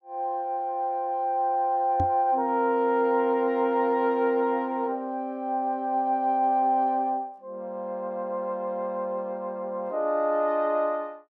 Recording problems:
knock on the microphone; at 2 s; peak -1 dB vs average level

